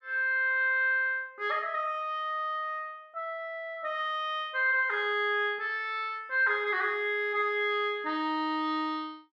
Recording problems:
none

